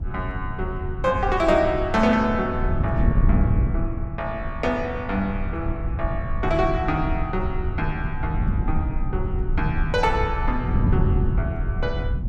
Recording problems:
rumble; below 82 Hz, SNR 6 dB
wind noise; below 140 Hz, SNR 3 dB

